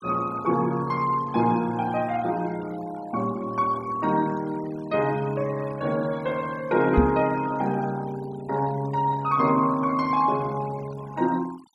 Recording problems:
noise reduction artefacts; signal-to-artefact ratio 20 dB
microphone bump; at 7 s; peak +8 dB vs average level

